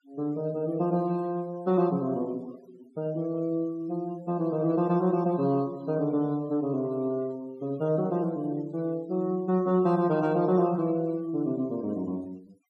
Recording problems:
denoising artefacts; signal-to-artefact ratio 26 dB

